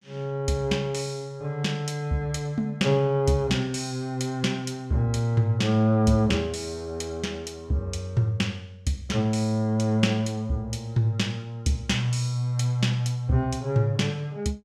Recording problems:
none

